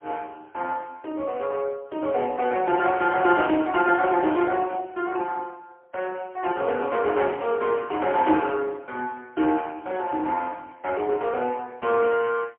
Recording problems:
phone line; 280 Hz to 3.2 kHz, AMR-NB, then MP3

